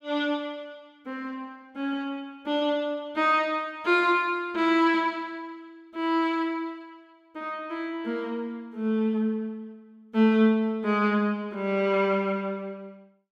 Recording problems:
none

